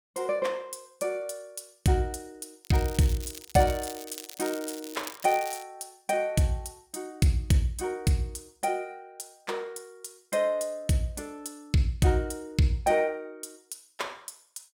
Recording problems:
crackling; from 2.5 to 5.5 s; loose cable, SNR 13 dB

